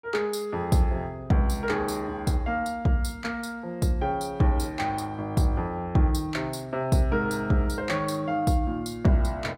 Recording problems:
none

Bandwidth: 16 kHz